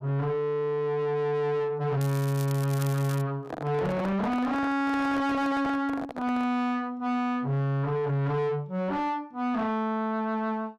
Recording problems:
distorted audio; soft clipping, signal-to-distortion ratio 8 dB
crackle; from 2 to 3 s; loose cable, SNR 16 dB
microphone handling noise; from 3.5 to 6.5 s; peak +1 dB vs average level

